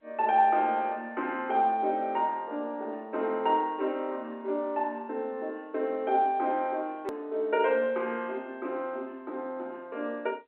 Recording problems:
phone line; 280 Hz to 3.2 kHz, G.711
hard cut with a click; at 7 s

